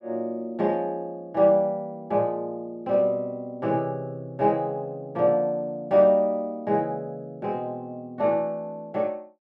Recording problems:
none

